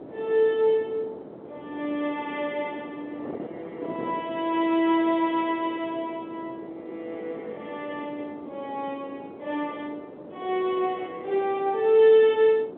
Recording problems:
phone line; 300 Hz to 3.6 kHz, G.711
wind on the microphone; below 550 Hz, SNR 16 dB

